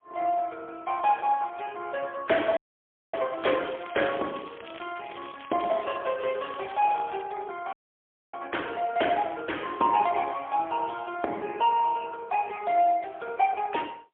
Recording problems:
phone line; 300 Hz to 3.3 kHz, AMR-NB, then MP3
frozen audio; at 2.5 s for 0.5 s and at 7.5 s for 0.5 s
crackle; from 3.5 to 7 s; loose cable, SNR 19 dB

